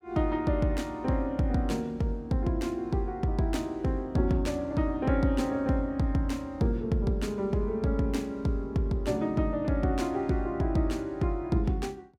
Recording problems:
none

